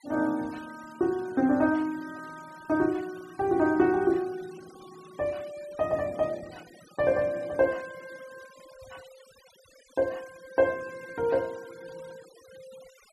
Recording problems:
noise reduction artefacts; signal-to-artefact ratio 24 dB

